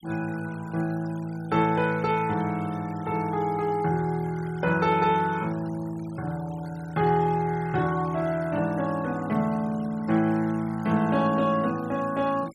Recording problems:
denoising artefacts; signal-to-artefact ratio 22 dB

